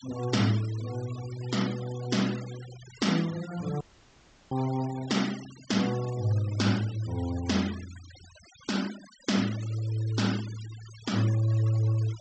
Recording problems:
treble cut off; nothing above 8 kHz
noise reduction artefacts; signal-to-artefact ratio 15 dB
dropout; at 4 s for 0.5 s

